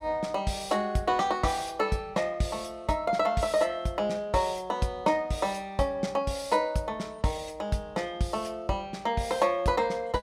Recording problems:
none

